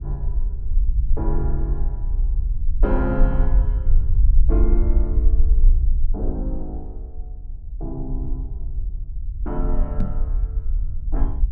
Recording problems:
low-frequency rumble; below 50 Hz, SNR -7 dB
microphone bump; at 10 s; peak +7 dB vs average level

